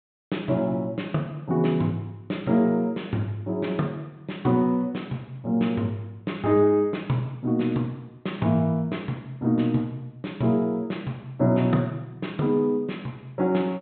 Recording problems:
treble cut off; nothing above 4 kHz

